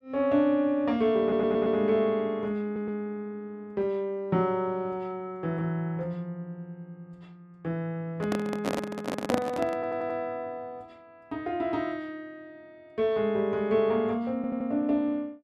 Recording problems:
stutter; 4 times, first at 1 s
handling noise; from 8 to 10 s; peak +4 dB vs average level

